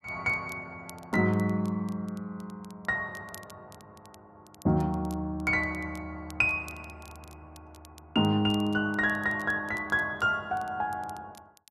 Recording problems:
crackling; vinyl, SNR 26 dB

